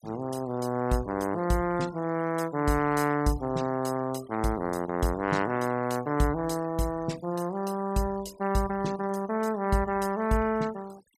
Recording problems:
noise reduction artefacts; signal-to-artefact ratio 20 dB

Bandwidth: 14.5 kHz